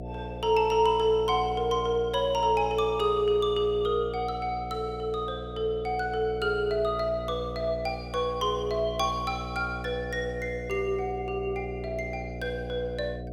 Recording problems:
hum; 60 Hz, harmonics up to 720 Hz, SNR 10 dB

